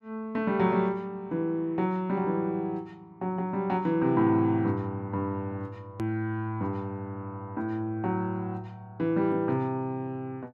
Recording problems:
edit click; at 6 s

